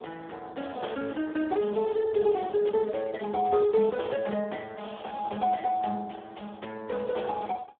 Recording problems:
telephone audio; 240 Hz to 2.2 kHz, Speex

